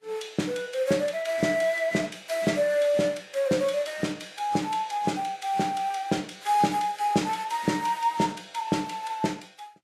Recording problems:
codec artefacts; Vorbis, log-spectral distance 3 dB, nothing above 13.1 kHz

